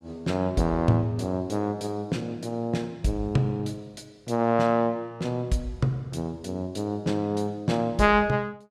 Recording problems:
none

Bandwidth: 14.5 kHz